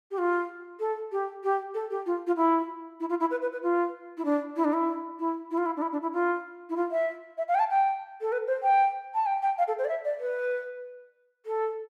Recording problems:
none

